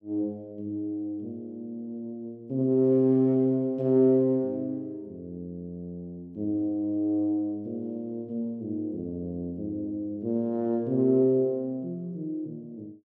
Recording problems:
none

